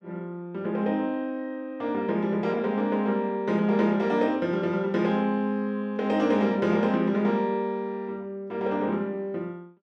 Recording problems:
none

